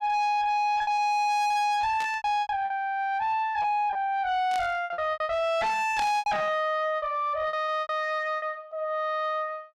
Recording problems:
distortion; soft clipping, signal-to-distortion ratio 6 dB
lost packets; 11% of the sound replaced, filled with repeated pitch periods
static burst; at 2 s, at 4.5 s and at 6 s; peak -6 dB vs average level

